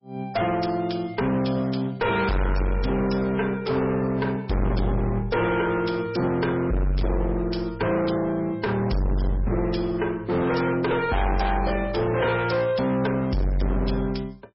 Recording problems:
lossy codec; MP3, log-spectral distance 3 dB, nothing above 5.5 kHz
distortion; hard clipping, uneven, signal-to-distortion ratio 5 dB

